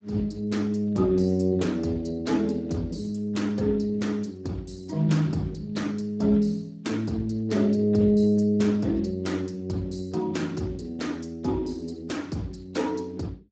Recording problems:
codec artefacts; Speex, log-spectral distance 3 dB, nothing above 7.6 kHz

